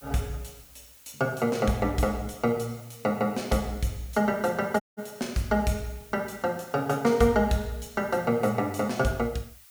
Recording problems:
hiss; slope +3 dB per octave, SNR 23 dB
audio cutting out; at 5 s

